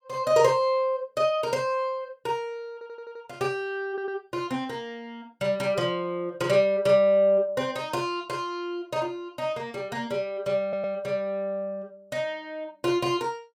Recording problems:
audio stuttering; at 2.5 s, at 4 s and at 11 s

